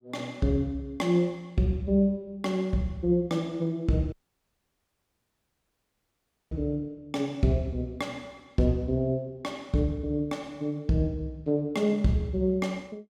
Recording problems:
dropout; at 4 s for 2.5 s

